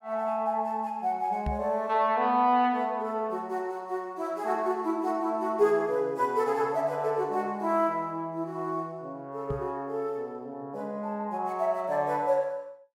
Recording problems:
knock on the microphone; at 1.5 s and at 9.5 s; peak -1 dB vs average level

